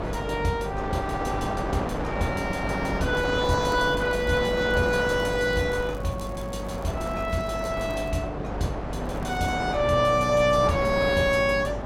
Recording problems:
hum; 50 Hz, harmonics up to 300 Hz, SNR 13 dB
wind noise; below 950 Hz, SNR 7 dB
crackling; at 3 s, from 4 to 8 s and at 9 s; loose cable, SNR 28 dB

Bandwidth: 16 kHz